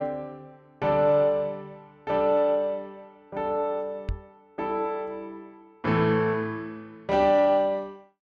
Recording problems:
microphone thump; at 4 s; peak -3 dB vs average level

